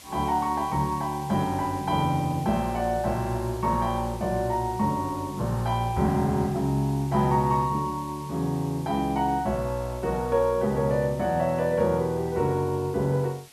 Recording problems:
background hiss; slope 0 dB per octave, SNR 21 dB

